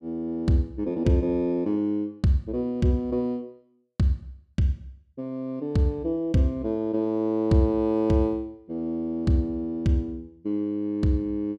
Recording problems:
none

